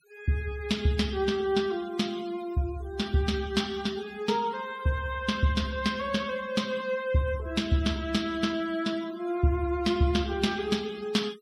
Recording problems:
denoising artefacts; signal-to-artefact ratio 20 dB

